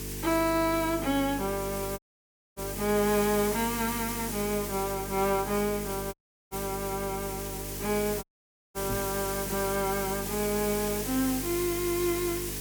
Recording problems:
hum; 50 Hz, harmonics up to 450 Hz, SNR 10 dB
background hiss; slope 0 dB per octave, SNR 5 dB
audio cutting out; at 2 s for 0.5 s, at 6 s and at 8 s for 0.5 s
knock on the microphone; at 9 s; peak -3 dB vs average level

